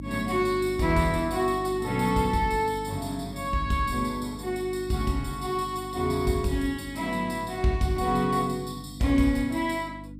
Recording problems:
mains hum; 50 Hz, harmonics up to 300 Hz, SNR 13 dB

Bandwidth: 14.5 kHz